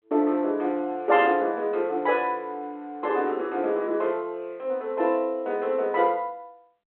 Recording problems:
phone line; 260 Hz to 3.5 kHz, G.726

